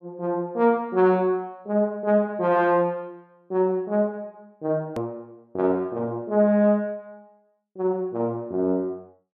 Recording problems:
edit click; at 5 s

